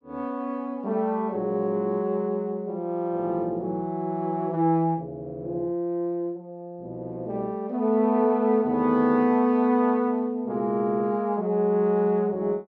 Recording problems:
none

